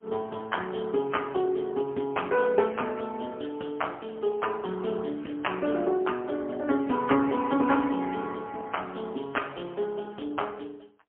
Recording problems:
phone line; 220 Hz to 3.1 kHz, AMR-NB, then MP3

